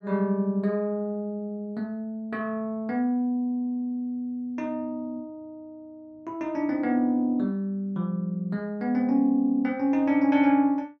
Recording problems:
none

